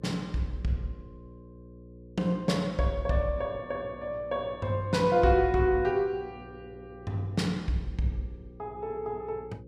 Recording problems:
electrical hum; 60 Hz, harmonics up to 540 Hz, SNR 20 dB

